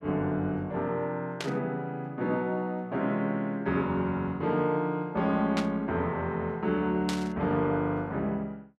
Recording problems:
burst of static; at 1.5 s, at 5.5 s and at 7 s; peak 0 dB vs average level

